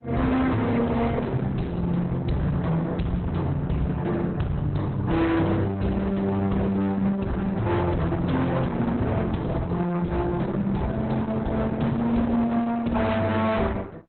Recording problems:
lossy codec; Opus, log-spectral distance 3 dB, nothing above 4 kHz
distortion; hard clipping, uneven, signal-to-distortion ratio 6 dB

